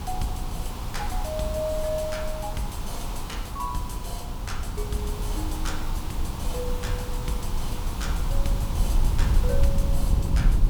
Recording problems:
electrical hum; 60 Hz, harmonics up to 780 Hz, SNR 11 dB
background hiss; SNR 4 dB
low-frequency rumble; below 70 Hz, SNR -4 dB

